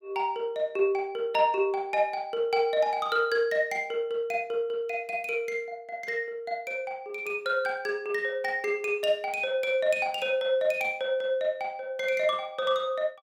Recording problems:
none

